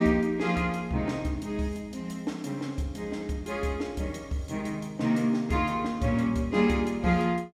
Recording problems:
none

